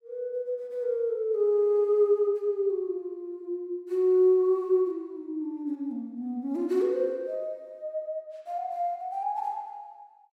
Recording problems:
none

